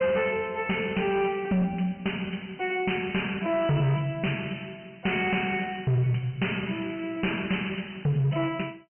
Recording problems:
low-pass filter; nothing above 3.1 kHz
distortion; hard clipping, signal-to-distortion ratio 10 dB

